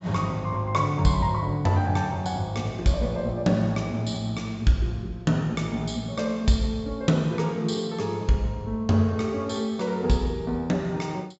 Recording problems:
treble cut off; nothing above 7.4 kHz

